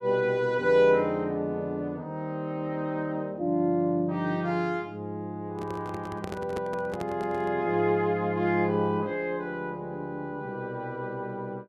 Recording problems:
handling noise; from 5.5 to 7.5 s; peak -4 dB vs average level

